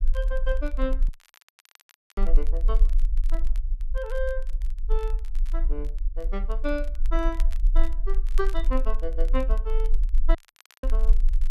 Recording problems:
low-frequency rumble; below 36 Hz, strongest tone 20 Hz, SNR -6 dB
crackling; vinyl, SNR 20 dB
dropout; at 1 s for 1 s and at 10 s

